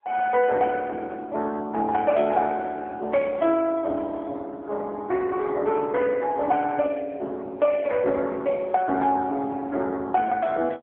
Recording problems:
telephone audio; 240 Hz to 3.3 kHz, AMR-NB

